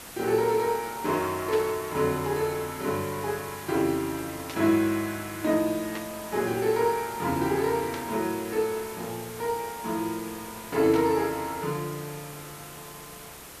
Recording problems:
background hiss; slope -3 dB per octave, SNR 13 dB
burst of static; 5 times, first at 1.5 s; peak -6 dB vs average level

